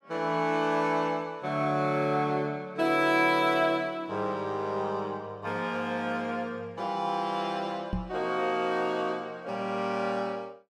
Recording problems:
knock on the microphone; at 8 s; peak 0 dB vs average level

